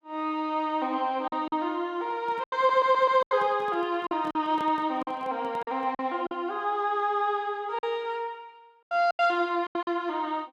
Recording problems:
packet loss; 8% of the sound replaced, filled with silence
microphone handling noise; from 2 to 6 s; peak -10 dB vs average level
stutter; at 2.5 s

